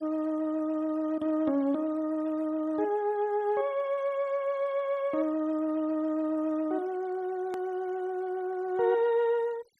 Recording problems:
denoising artefacts; signal-to-artefact ratio 27 dB
hard cut with a click; at 7.5 s

